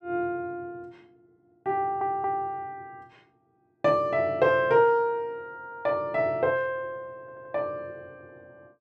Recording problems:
stutter; at 2 s and at 7 s

